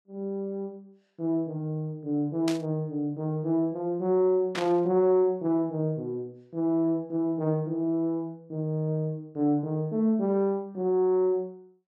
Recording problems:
burst of static; at 2.5 s and at 4.5 s; peak -2 dB vs average level

